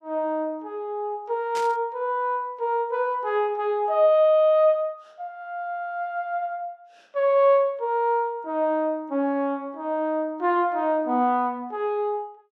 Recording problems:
static burst; at 1.5 s; peak -8 dB vs average level

